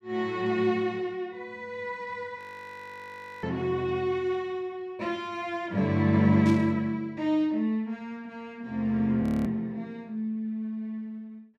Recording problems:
audio freezing; at 2.5 s for 1 s and at 9 s
static burst; at 6.5 s; peak -8 dB vs average level

